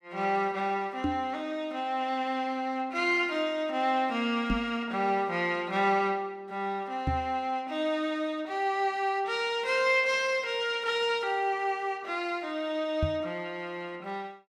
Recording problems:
knock on the microphone; 4 times, first at 1 s; peak +3 dB vs average level

